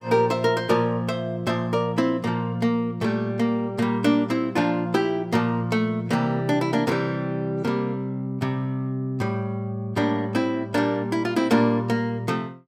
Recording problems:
none

